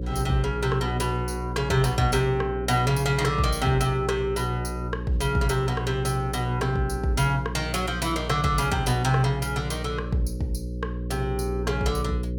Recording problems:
hum; 60 Hz, harmonics up to 540 Hz, SNR 7 dB

